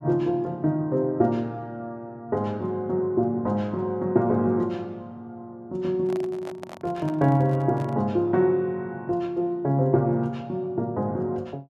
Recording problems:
handling noise; from 6 to 8 s; peak -10 dB vs average level

